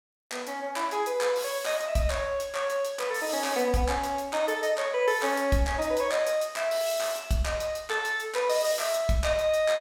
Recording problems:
none

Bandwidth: 17 kHz